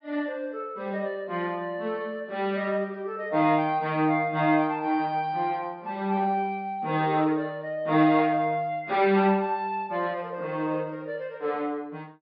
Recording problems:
treble cut off; nothing above 5.5 kHz

